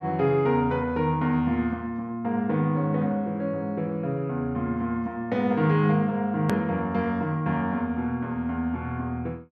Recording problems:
hard cut with a click; at 6.5 s

